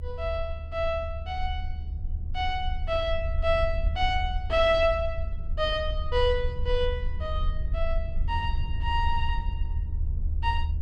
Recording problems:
rumble; below 74 Hz, SNR 3 dB

